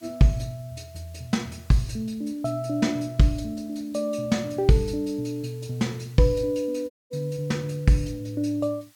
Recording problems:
hiss; slope +2 dB per octave, SNR 28 dB
dropout; at 7 s

